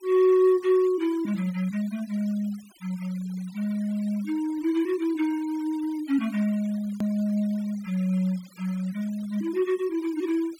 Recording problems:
denoising artefacts; signal-to-artefact ratio 23 dB
edit click; at 7 s

